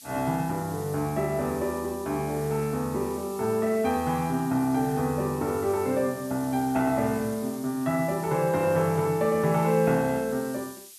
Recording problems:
hiss; SNR 17 dB

